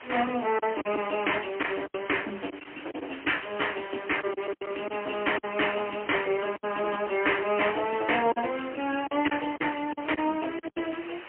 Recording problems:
telephone audio; 260 Hz to 3.1 kHz, AMR-NB, then MP3
background hiss; SNR 14 dB
packet loss; 8% of the sound replaced, filled with silence

